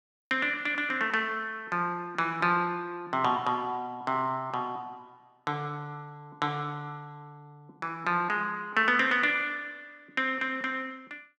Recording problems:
none

